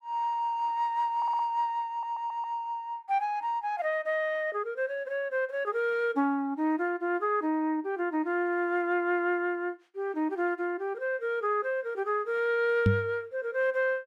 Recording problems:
audio stuttering; at 1 s and at 2 s
knock on the microphone; at 13 s; peak +8 dB vs average level

